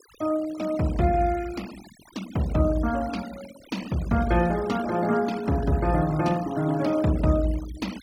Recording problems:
denoising artefacts; signal-to-artefact ratio 19 dB

